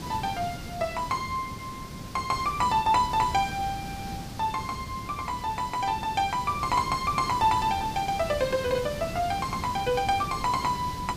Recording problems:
hiss; SNR 10 dB

